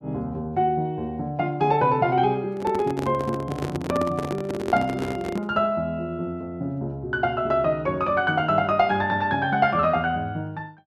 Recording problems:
handling noise; from 2.5 to 5.5 s; peak 0 dB vs average level

